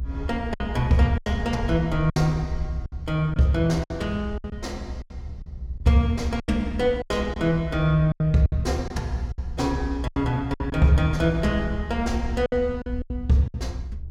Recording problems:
hum; 60 Hz, harmonics up to 780 Hz, SNR 24 dB
rumble; below 72 Hz, strongest tone 60 Hz, SNR 9 dB
packet loss; 9% of the sound replaced, filled with silence

